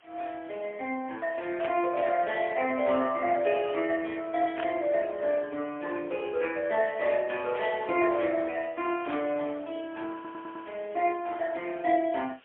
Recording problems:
phone line; 190 Hz to 3.3 kHz, AMR-NB, then MP3
hiss; SNR 28 dB
static burst; 4 times, first at 1.5 s; peak -5 dB vs average level
stutter; at 10 s

